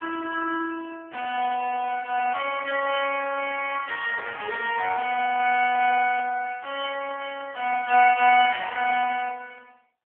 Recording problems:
phone line; 280 Hz to 3.2 kHz, AMR-NB

